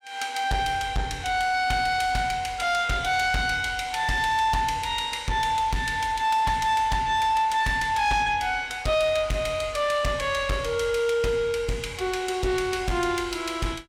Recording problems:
distortion; soft clipping, signal-to-distortion ratio 12 dB

